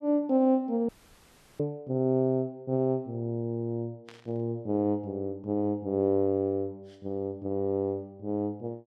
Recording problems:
dropout; at 1 s for 0.5 s
static burst; at 4 s; peak -15 dB vs average level

